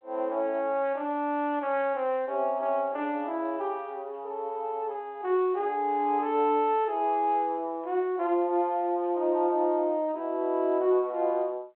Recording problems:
phone line; 300 Hz to 3.3 kHz, G.726

